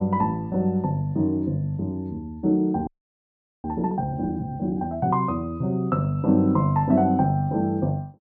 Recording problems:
audio freezing; at 3 s for 1 s

